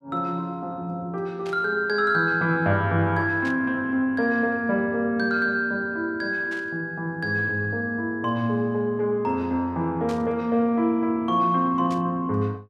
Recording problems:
static burst; 5 times, first at 1.5 s; peak -11 dB vs average level

